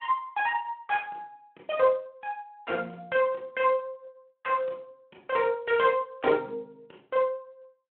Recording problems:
phone line; 260 Hz to 3.5 kHz, Speex

